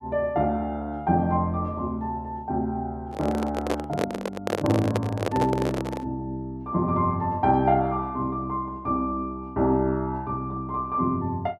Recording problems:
handling noise; from 3 to 6 s; peak +4 dB vs average level

